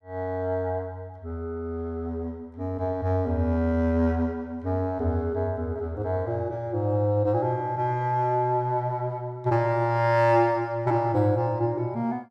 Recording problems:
none

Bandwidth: 14.5 kHz